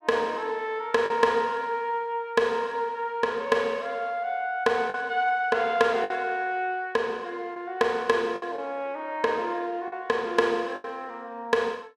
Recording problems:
packet loss; 3% of the sound replaced, filled with the last packet

